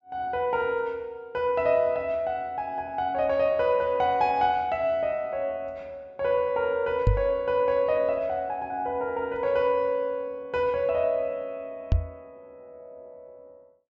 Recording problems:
low-pass filter; nothing above 8 kHz
microphone bump; at 7 s and at 12 s; peak +7 dB vs average level

